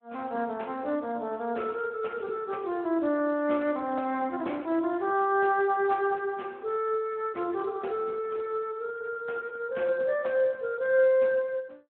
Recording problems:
telephone audio; 240 Hz to 2.8 kHz, Speex

